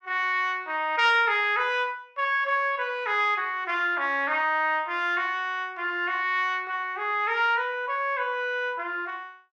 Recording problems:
none

